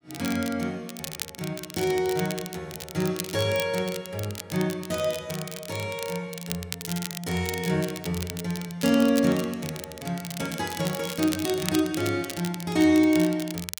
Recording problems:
crackling; vinyl, SNR 10 dB

